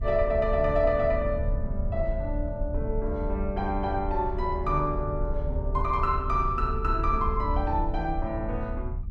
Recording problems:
rumble; below 72 Hz, strongest tone 36 Hz, SNR 4 dB

